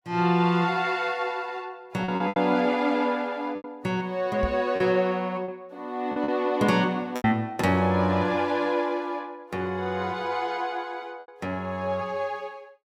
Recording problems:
packet loss; 4% of the sound replaced, filled with repeated pitch periods
knock on the microphone; at 4.5 s; peak 0 dB vs average level

